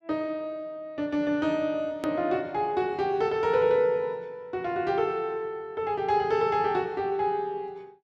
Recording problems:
hard cut with a click; at 2 s

